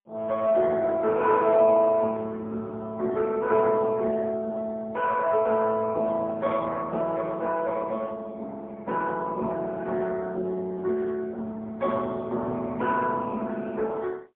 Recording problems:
telephone audio; 260 Hz to 3.4 kHz, AMR-NB, then MP3

